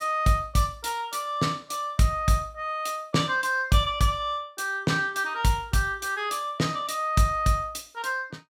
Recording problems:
none

